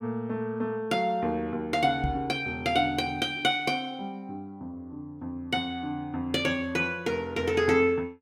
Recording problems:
knock on the microphone; at 2 s; peak +1 dB vs average level

